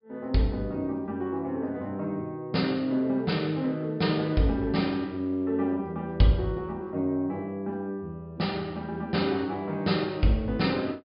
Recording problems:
low-pass filter; nothing above 5.5 kHz

